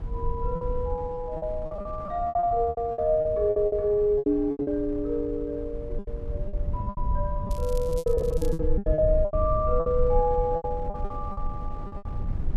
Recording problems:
rumble; below 64 Hz, strongest tone 20 Hz, SNR 7 dB
wind noise; below 390 Hz, SNR 18 dB
lost packets; 17% of the sound replaced, filled with repeated pitch periods
crackling; from 7.5 to 8.5 s; loose cable, SNR 21 dB

